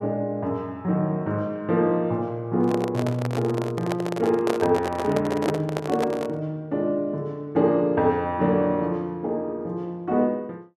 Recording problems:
microphone handling noise; from 2.5 to 6.5 s; peak +2 dB vs average level

